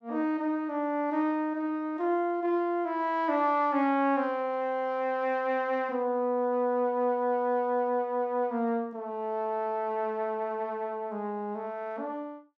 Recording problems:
none

